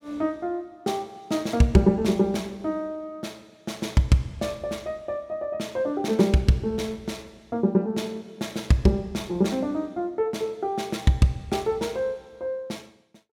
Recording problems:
none

